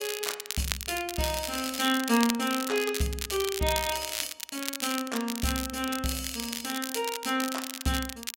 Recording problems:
crackle; vinyl, SNR 4 dB

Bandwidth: 16 kHz